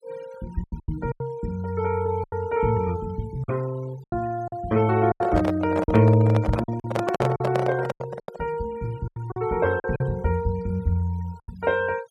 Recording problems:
denoising artefacts; signal-to-artefact ratio 21 dB
lost packets; 10% of the sound replaced, filled with silence
microphone handling noise; from 5 to 8.5 s; peak +2 dB vs average level

